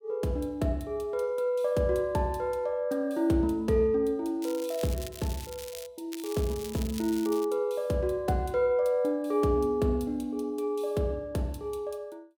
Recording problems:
crackling; from 4.5 to 6 s and from 6 to 7.5 s; loose cable, SNR 15 dB

